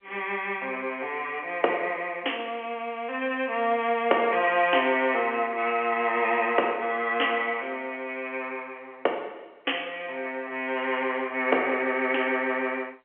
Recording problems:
phone line; 320 Hz to 3.2 kHz, G.711

